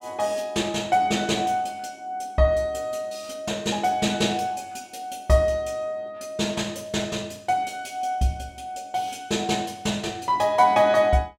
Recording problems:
none

